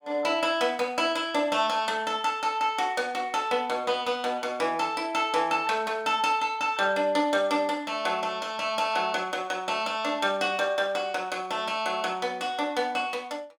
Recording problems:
none

